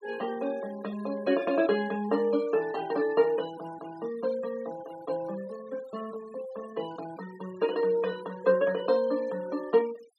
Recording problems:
denoising artefacts; signal-to-artefact ratio 19 dB

